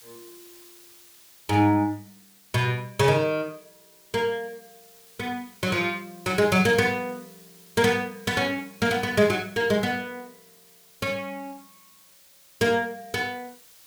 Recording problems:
background hiss; slope +1 dB per octave, SNR 25 dB

